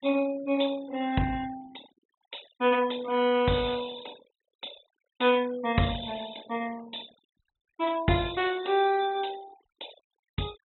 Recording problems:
treble missing; nothing above 4 kHz
denoising artefacts; signal-to-artefact ratio 20 dB

